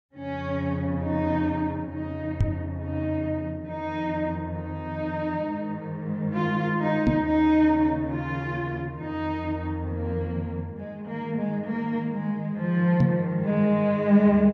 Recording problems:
microphone bump; at 2.5 s, at 7 s and at 13 s; peak +8 dB vs average level

